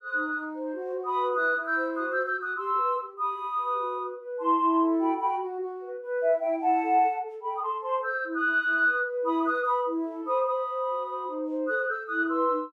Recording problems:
none

